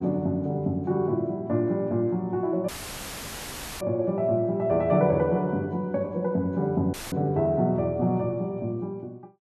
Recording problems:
audio cutting out; at 2.5 s for 1 s and at 7 s; filled with static

